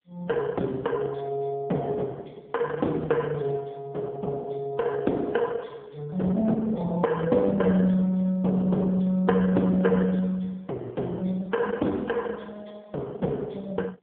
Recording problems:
telephone audio; 190 Hz to 3.6 kHz, AMR-NB

